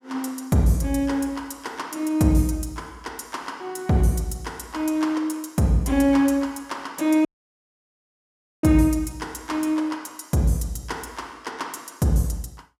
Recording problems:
audio cutting out; at 7.5 s for 1.5 s

